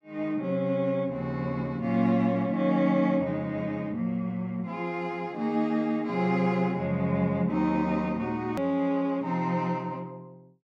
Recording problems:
hard cut with a click; at 8.5 s

